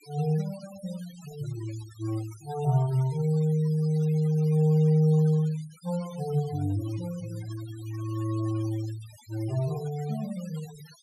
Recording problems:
denoising artefacts; signal-to-artefact ratio 22 dB

